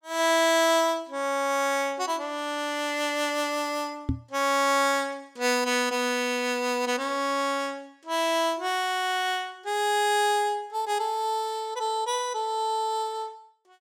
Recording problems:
microphone thump; at 4 s; peak +2 dB vs average level

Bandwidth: 17.5 kHz